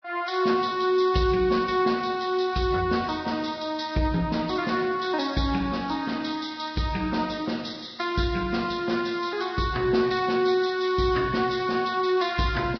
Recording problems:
codec artefacts; Vorbis, log-spectral distance 5 dB, nothing above 5.5 kHz

